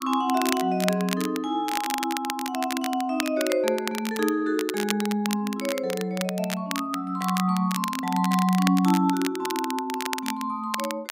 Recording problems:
crackling; vinyl, SNR 8 dB

